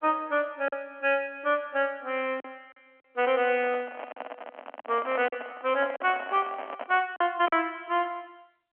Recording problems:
phone line; 240 Hz to 3.3 kHz, G.711
packet loss; 4% of the sound replaced, filled with silence
handling noise; from 3.5 to 7 s; peak -5 dB vs average level

